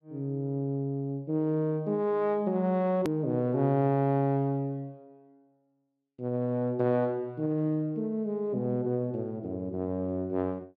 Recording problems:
click at an edit; at 3 s

